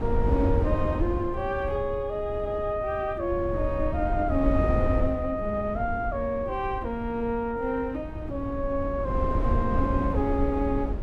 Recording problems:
wind on the microphone; below 140 Hz, SNR 3 dB

